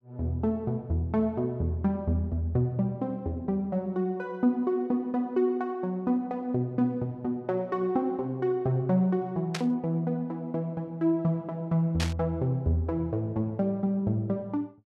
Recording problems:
static burst; at 9.5 s and at 12 s; peak 0 dB vs average level

